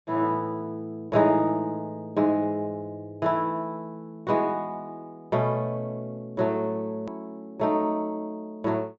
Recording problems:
low-pass filter; nothing above 8 kHz
edit click; at 7 s

